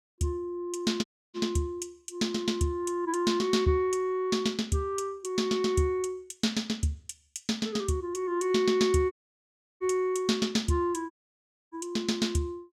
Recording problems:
dropout; at 1 s, at 9 s for 0.5 s and at 11 s for 0.5 s

